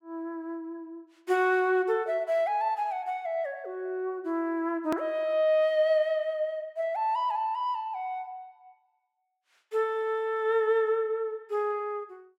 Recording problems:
hard cut with a click; at 5 s

